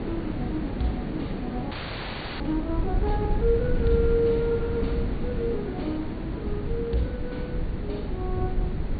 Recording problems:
treble missing; nothing above 4.6 kHz
mains hum; 50 Hz, harmonics up to 300 Hz, SNR 17 dB
hiss; SNR 4 dB
rumble; below 86 Hz, SNR 3 dB
frozen audio; at 1.5 s for 0.5 s

